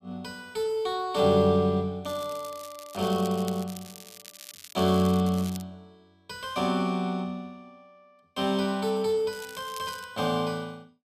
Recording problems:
crackle; from 2 to 5.5 s and at 9.5 s; loose cable, SNR 17 dB

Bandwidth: 14.5 kHz